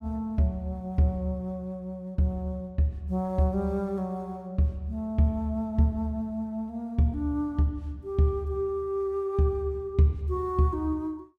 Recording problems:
none

